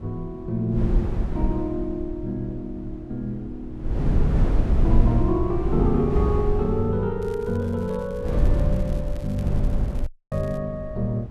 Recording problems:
wind noise; below 80 Hz, SNR -1 dB
crackle; from 7 to 11 s; loose cable, SNR 25 dB
dropout; at 10 s

